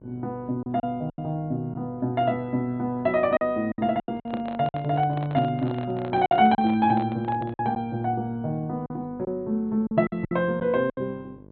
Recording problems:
treble missing; nothing above 4.2 kHz
hum; 50 Hz, harmonics up to 1.1 kHz, SNR 23 dB
lost packets; 8% of the sound replaced, filled with silence
handling noise; from 4 to 7.5 s; peak -6 dB vs average level

